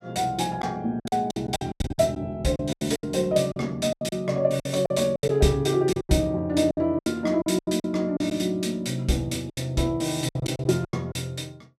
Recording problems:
packet loss; 14% of the sound replaced, filled with silence

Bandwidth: 15.5 kHz